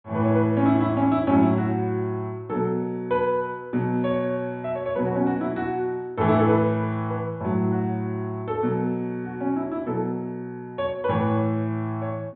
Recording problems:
treble missing; nothing above 4 kHz

